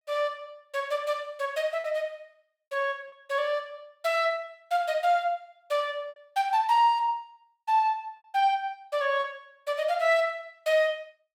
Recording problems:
packet loss; 1.7% of the sound replaced, filled with repeated pitch periods

